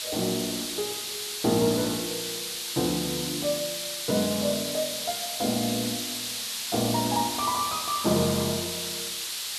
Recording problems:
hiss; SNR 1 dB

